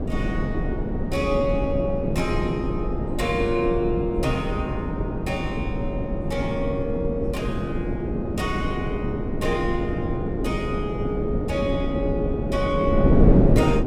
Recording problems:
wind noise; below 300 Hz, SNR -2 dB

